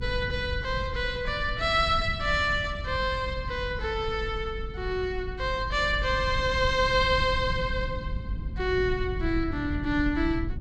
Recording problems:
rumble; below 100 Hz, SNR 8 dB

